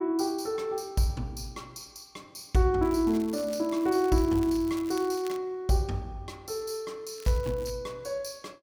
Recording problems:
crackle; from 3 to 5.5 s and at 7 s; loose cable, SNR 20 dB

